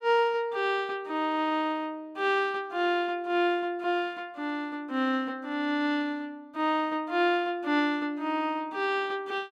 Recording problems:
none

